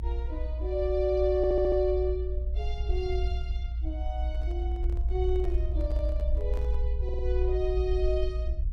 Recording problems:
low-frequency rumble; below 60 Hz, strongest tone 58 Hz, SNR 0 dB
stutter; at 1.5 s and at 7 s
handling noise; from 4.5 to 7 s; peak -9 dB vs average level

